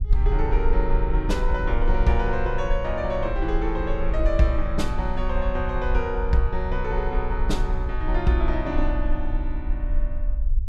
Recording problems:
low-frequency rumble; below 46 Hz, strongest tone 22 Hz, SNR 1 dB

